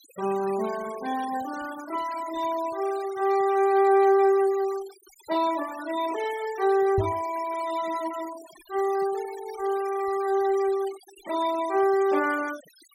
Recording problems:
denoising artefacts; signal-to-artefact ratio 18 dB
microphone thump; at 7 s; peak +1 dB vs average level

